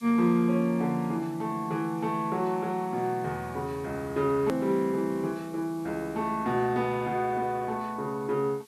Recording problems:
hiss; SNR 26 dB
edit click; at 4.5 s

